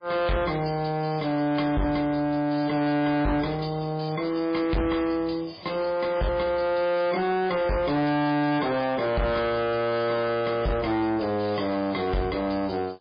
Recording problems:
codec artefacts; MP3, log-spectral distance 5 dB
distortion; soft clipping, signal-to-distortion ratio 8 dB

